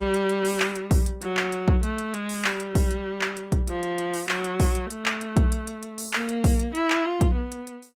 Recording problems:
lossy codec; Opus, log-spectral distance 3 dB

